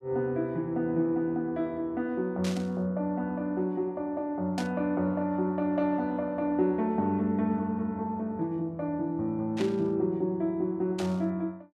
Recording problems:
burst of static; 4 times, first at 2.5 s; peak -5 dB vs average level

